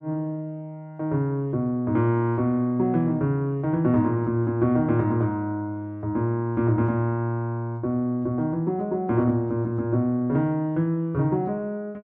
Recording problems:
none

